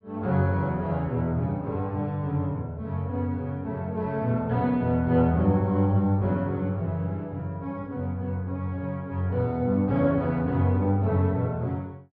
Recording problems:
treble missing; nothing above 5.5 kHz

